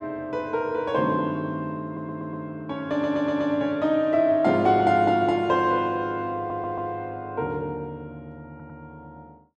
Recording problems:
audio stuttering; 4 times, first at 2 s

